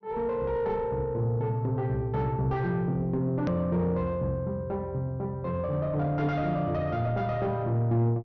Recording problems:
treble cut off; nothing above 6.2 kHz
distortion; soft clipping, signal-to-distortion ratio 10 dB
click at an edit; at 3.5 s

